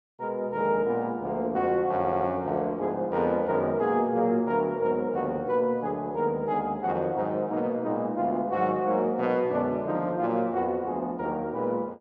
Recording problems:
audio stuttering; at 2 s

